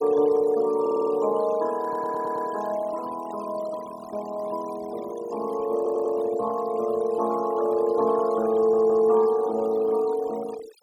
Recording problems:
denoising artefacts; signal-to-artefact ratio 18 dB
audio stuttering; 4 times, first at 1 s

